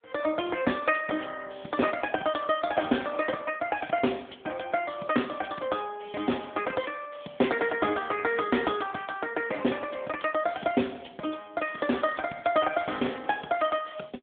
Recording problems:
phone line; 190 Hz to 3.5 kHz, AMR-NB

